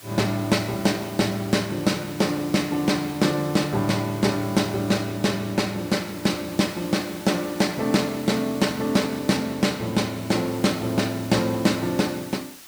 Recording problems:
background hiss; slope 0 dB per octave, SNR 18 dB

